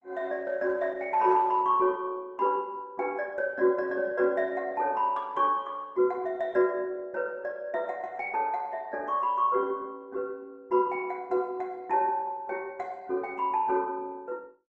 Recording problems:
lossy codec; Opus, log-spectral distance 2 dB

